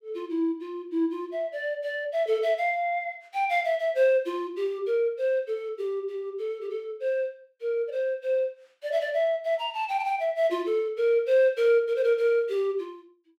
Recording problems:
none

